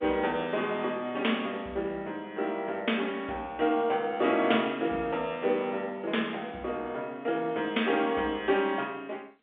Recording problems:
phone line; 220 Hz to 3.6 kHz, G.711

